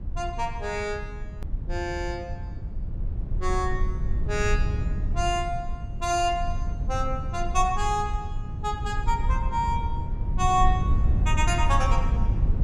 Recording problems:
rumble; below 86 Hz, SNR 1 dB
edit click; at 1.5 s

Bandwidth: 15 kHz